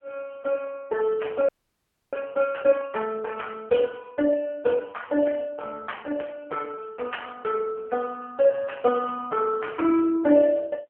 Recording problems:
telephone audio; 240 Hz to 3.3 kHz, AMR-NB
frozen audio; at 1.5 s for 0.5 s

